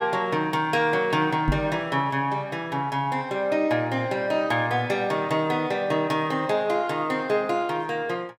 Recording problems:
knock on the microphone; at 1.5 s; peak +4 dB vs average level

